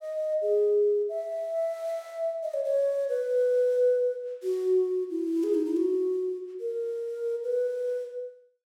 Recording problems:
none

